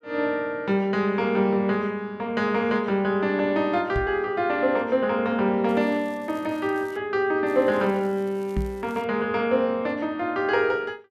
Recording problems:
microphone thump; at 4 s and at 8.5 s; peak 0 dB vs average level
crackle; from 5.5 to 7 s and from 7.5 to 9 s; loose cable, SNR 30 dB

